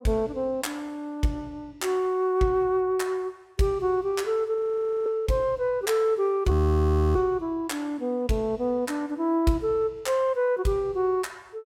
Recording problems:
audio freezing; at 4.5 s for 0.5 s and at 6.5 s for 0.5 s

